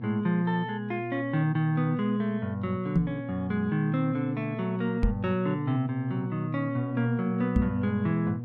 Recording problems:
hum; 60 Hz, harmonics up to 720 Hz, SNR 9 dB
microphone thump; at 3 s, at 5 s and at 7.5 s; peak +7 dB vs average level

